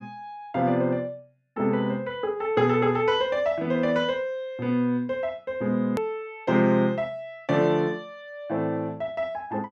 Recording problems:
edit click; at 6 s

